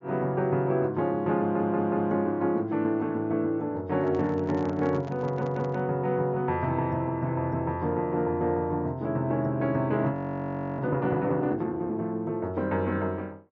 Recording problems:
treble cut off; nothing above 7.2 kHz
stutter; at 1.5 s and at 5 s
microphone handling noise; from 4 to 6 s; peak -11 dB vs average level
audio freezing; at 10 s for 0.5 s

